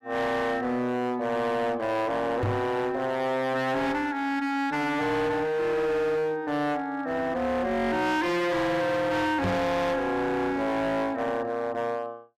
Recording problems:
distorted audio; hard clipping, signal-to-distortion ratio 7 dB
microphone thump; at 2.5 s and at 9.5 s; peak +4 dB vs average level

